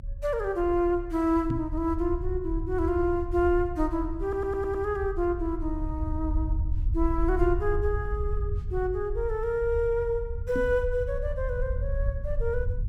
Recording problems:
rumble; below 76 Hz, SNR 5 dB
microphone thump; at 1.5 s and at 11 s; peak +2 dB vs average level
audio stuttering; at 4 s

